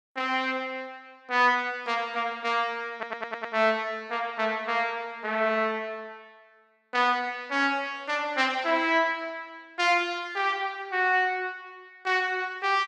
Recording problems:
stutter; at 3 s

